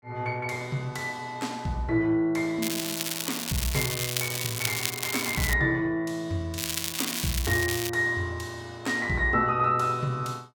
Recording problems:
crackling; from 2.5 to 5.5 s and from 6.5 to 8 s; loose cable, SNR 2 dB

